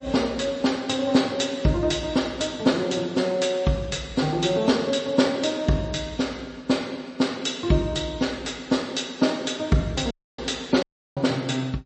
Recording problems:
lossy compression; MP3, log-spectral distance 4 dB, nothing above 8 kHz
dropout; at 10 s and at 11 s

